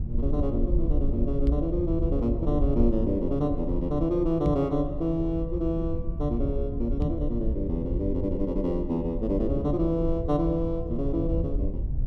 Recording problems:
rumble; below 76 Hz, SNR 4 dB
knock on the microphone; at 1.5 s, at 4.5 s and at 7 s; peak +5 dB vs average level

